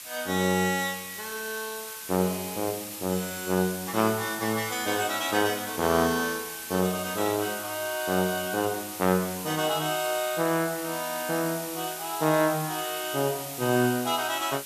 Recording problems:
hiss; slope +2 dB per octave, SNR 8 dB

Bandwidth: 14.5 kHz